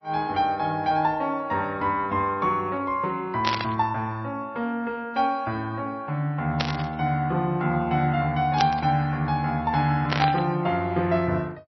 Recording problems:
lossy codec; MP3, log-spectral distance 2 dB, nothing above 4.9 kHz
static burst; 4 times, first at 3.5 s; peak +3 dB vs average level

